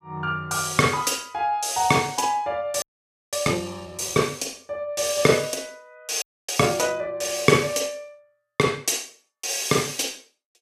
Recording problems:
frozen audio; at 3 s for 0.5 s and at 6 s

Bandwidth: 15 kHz